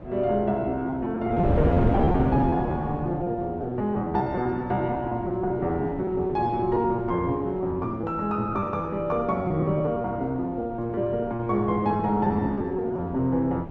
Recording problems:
wind noise; below 430 Hz, SNR 7 dB
lost packets; 15% of the sound replaced, filled with repeated pitch periods

